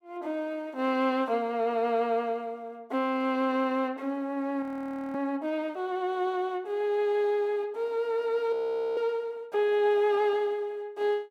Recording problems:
audio freezing; at 4.5 s for 0.5 s and at 8.5 s

